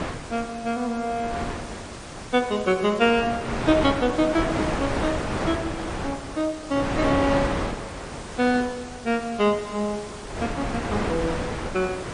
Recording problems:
codec artefacts; MP3, log-spectral distance 6 dB, nothing above 8.7 kHz
hiss; slope -3 dB per octave, SNR 17 dB
wind noise; below 1.2 kHz, SNR 5 dB

